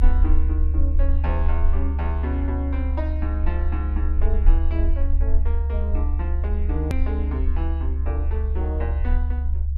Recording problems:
low-frequency rumble; below 72 Hz, SNR -10 dB
click at an edit; at 7 s

